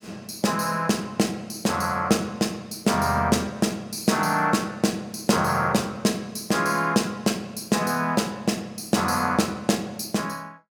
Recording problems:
none

